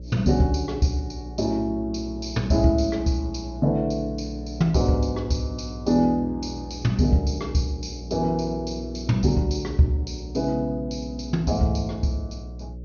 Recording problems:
treble missing; nothing above 6.5 kHz
hum; 60 Hz, harmonics up to 540 Hz, SNR 12 dB

